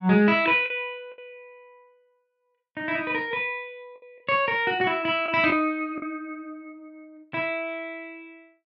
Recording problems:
packet loss; 3% of the sound replaced, filled with the last packet

